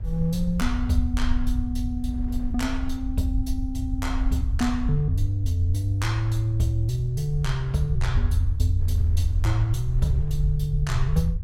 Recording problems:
low-frequency rumble; below 72 Hz, SNR 3 dB
wind on the microphone; below 410 Hz, SNR 27 dB

